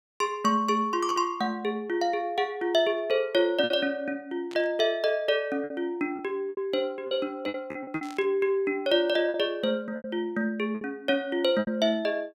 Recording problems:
lost packets; 6% of the sound replaced, filled with repeated pitch periods
burst of static; at 4.5 s and at 8 s; peak -14 dB vs average level

